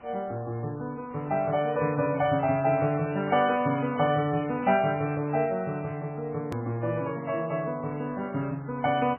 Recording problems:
lossy codec; MP3, log-spectral distance 6 dB, nothing above 2.5 kHz
background hiss; SNR 24 dB
click at an edit; at 6.5 s

